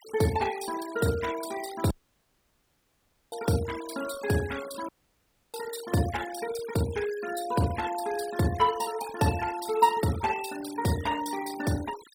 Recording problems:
denoising artefacts; signal-to-artefact ratio 13 dB
dropout; at 2 s for 1.5 s and at 5 s for 0.5 s

